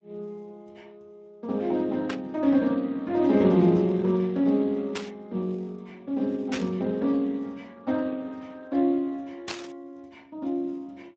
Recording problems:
codec artefacts; Speex, log-spectral distance 2 dB
static burst; 4 times, first at 2 s; peak -3 dB vs average level

